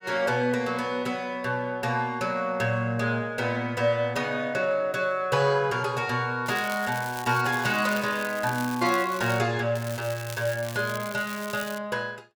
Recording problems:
crackling; from 6.5 to 9.5 s and from 10 to 12 s; loose cable, SNR 14 dB

